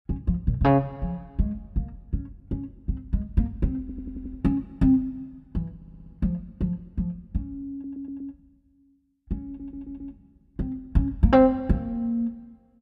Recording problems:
stutter; 4 times, first at 4 s

